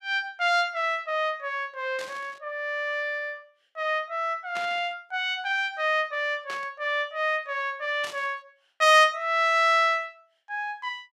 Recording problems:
static burst; 4 times, first at 2 s; peak -9 dB vs average level

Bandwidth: 15 kHz